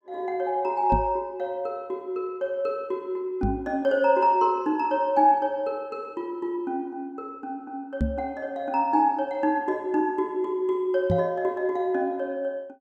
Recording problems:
knock on the microphone; 4 times, first at 1 s; peak +4 dB vs average level

